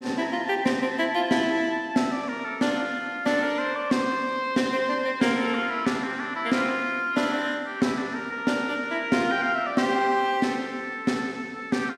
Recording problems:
none

